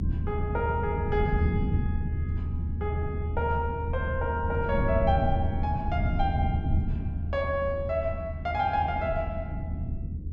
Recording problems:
treble cut off; nothing above 8 kHz
low-frequency rumble; below 150 Hz, SNR 0 dB

